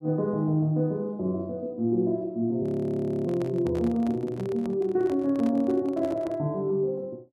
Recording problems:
audio freezing; at 2.5 s for 0.5 s
microphone handling noise; from 3.5 to 6.5 s; peak -9 dB vs average level

